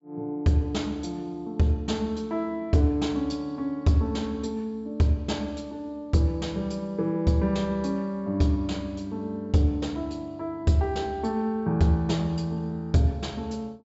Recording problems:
treble missing; nothing above 8 kHz

